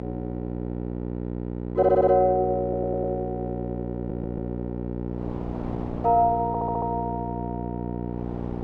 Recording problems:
hum; 60 Hz, harmonics up to 1 kHz, SNR 7 dB
wind on the microphone; below 730 Hz, SNR 21 dB
stutter; 4 times, first at 2 s

